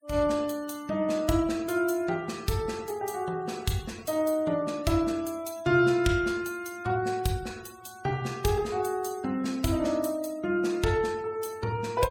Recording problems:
denoising artefacts; signal-to-artefact ratio 21 dB

